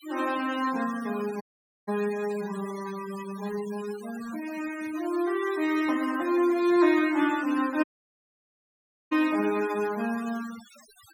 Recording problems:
noise reduction artefacts; signal-to-artefact ratio 17 dB
audio cutting out; at 1.5 s and at 8 s for 1.5 s

